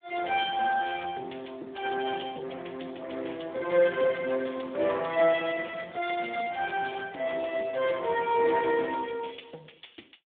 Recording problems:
phone line; 280 Hz to 3.5 kHz, Speex

